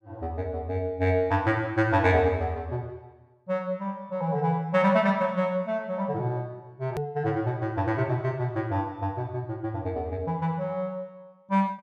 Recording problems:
hard cut with a click; at 7 s

